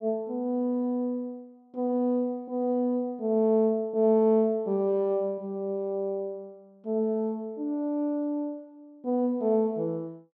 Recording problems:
none

